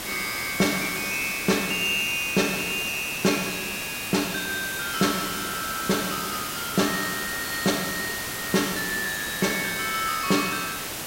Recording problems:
background hiss; slope -2 dB per octave, SNR 4 dB

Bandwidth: 16 kHz